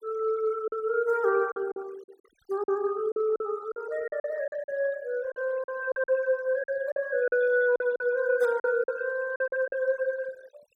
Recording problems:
denoising artefacts; signal-to-artefact ratio 22 dB
packet loss; 10% of the sound replaced, filled with silence

